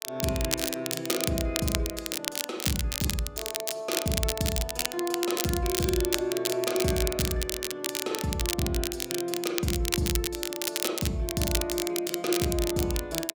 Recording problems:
crackle; vinyl, SNR 1 dB

